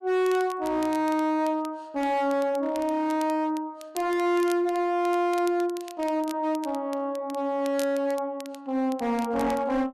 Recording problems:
distorted audio; hard clipping, signal-to-distortion ratio 10 dB
crackle; vinyl, SNR 20 dB

